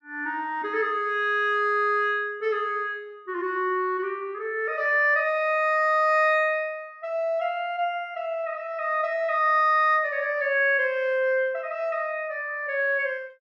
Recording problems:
none

